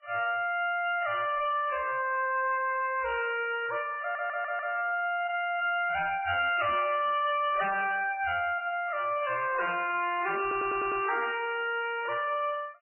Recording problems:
codec artefacts; AAC, then MP3, log-spectral distance 5 dB, nothing above 2.4 kHz
distorted audio; hard clipping, uneven, signal-to-distortion ratio 5 dB
audio stuttering; at 4 s and at 10 s

